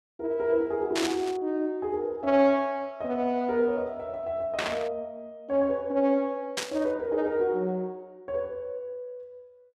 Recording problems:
burst of static; at 1 s, at 4.5 s and at 6.5 s; peak +3 dB vs average level

